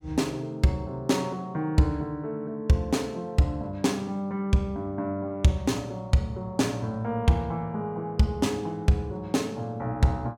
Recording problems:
none

